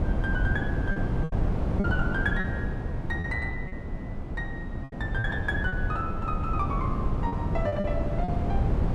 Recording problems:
wind on the microphone; below 200 Hz, SNR -3 dB
packet loss; 7% of the sound replaced, filled with repeated pitch periods

